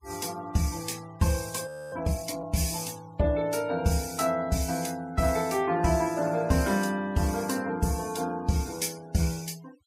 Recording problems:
noise reduction artefacts; signal-to-artefact ratio 21 dB
audio freezing; at 1.5 s

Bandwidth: 15.5 kHz